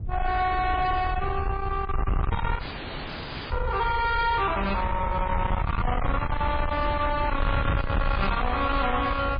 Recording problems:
lossy compression; MP3, log-spectral distance 4 dB, nothing above 4.8 kHz
distortion; soft clipping, signal-to-distortion ratio 9 dB
wind on the microphone; below 390 Hz, SNR 4 dB
audio freezing; at 2.5 s for 1 s

